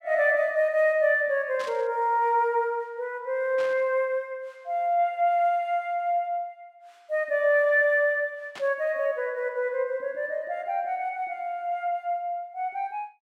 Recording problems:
static burst; at 1.5 s, at 3.5 s and at 8.5 s; peak -11 dB vs average level

